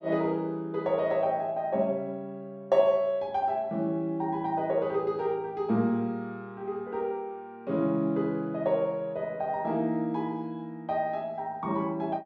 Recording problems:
none

